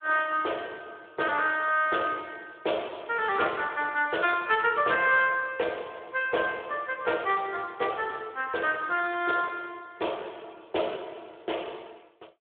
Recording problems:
phone line; 340 Hz to 3.5 kHz, Speex

